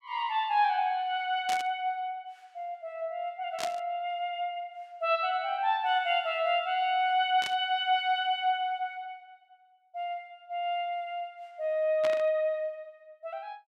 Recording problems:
static burst; 4 times, first at 1.5 s; peak -2 dB vs average level

